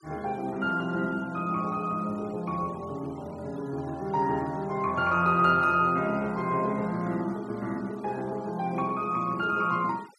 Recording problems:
denoising artefacts; signal-to-artefact ratio 25 dB

